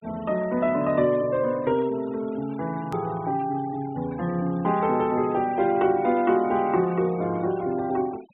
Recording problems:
treble cut off; nothing above 3.7 kHz
denoising artefacts; signal-to-artefact ratio 23 dB
hard cut with a click; at 3 s

